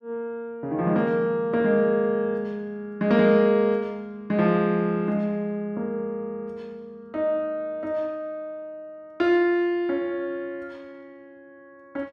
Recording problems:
none

